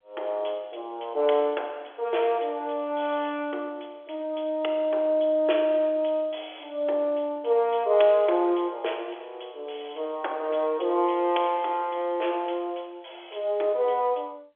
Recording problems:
phone line; 320 Hz to 3.4 kHz, G.711

